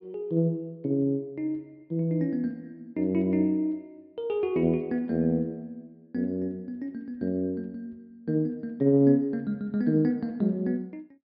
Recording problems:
treble missing; nothing above 5.5 kHz

